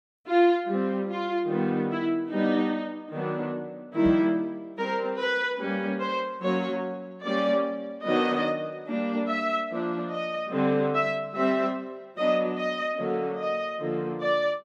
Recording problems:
knock on the microphone; at 4 s; peak -2 dB vs average level

